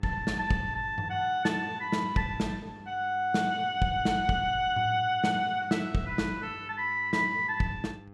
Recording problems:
hum; 50 Hz, harmonics up to 1.7 kHz, SNR 22 dB

